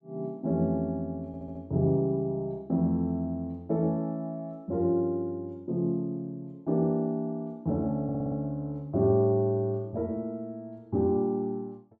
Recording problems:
stutter; at 1.5 s and at 8 s

